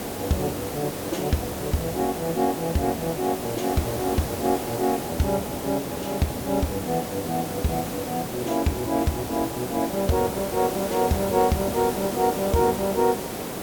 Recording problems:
hiss; SNR 5 dB

